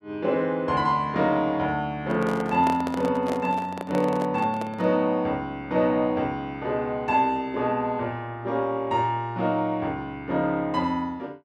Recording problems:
microphone handling noise; from 2 to 5 s; peak -2 dB vs average level

